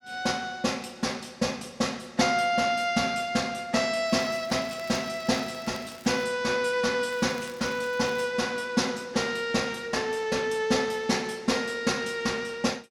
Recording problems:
crackle; from 4 to 6 s and from 7 to 8 s; loose cable, SNR 22 dB

